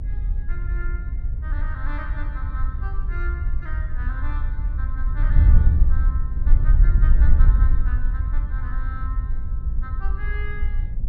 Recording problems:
rumble; below 60 Hz, strongest tone 24 Hz, SNR 3 dB
wind on the microphone; below 62 Hz, SNR -15 dB

